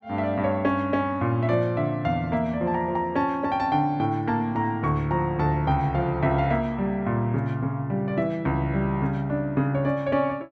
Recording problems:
none

